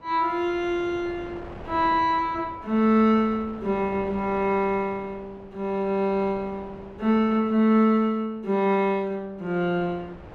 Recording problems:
wind on the microphone; below 790 Hz, SNR 20 dB

